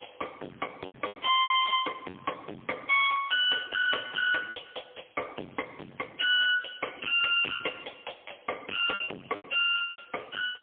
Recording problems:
phone line; 300 Hz to 2.9 kHz, AMR-NB, then MP3
distortion; soft clipping, signal-to-distortion ratio 2 dB
packet loss; 9% of the sound replaced, filled with repeated pitch periods

